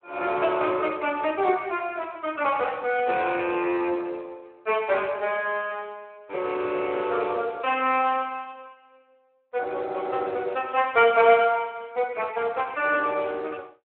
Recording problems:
phone line; 320 Hz to 3 kHz, Speex

